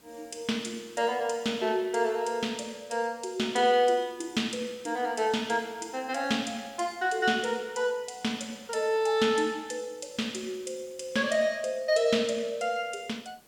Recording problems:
hiss; slope -3 dB per octave, SNR 29 dB

